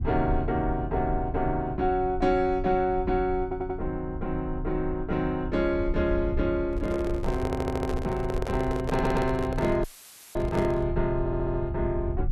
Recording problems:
low-frequency rumble; below 82 Hz, SNR 8 dB
stutter; 4 times, first at 3.5 s
handling noise; from 6.5 to 11 s; peak -1 dB vs average level
audio cutting out; at 10 s for 0.5 s; filled with static

